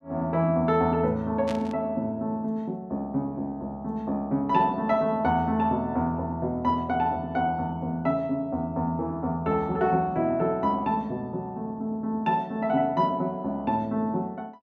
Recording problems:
static burst; at 1.5 s; peak -8 dB vs average level

